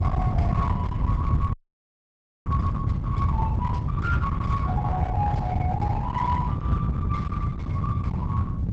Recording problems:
lossy codec; Opus, log-spectral distance 2 dB, nothing above 8 kHz
distorted audio; hard clipping, signal-to-distortion ratio 11 dB
rumble; below 150 Hz, SNR -5 dB
frozen audio; at 1.5 s for 1 s

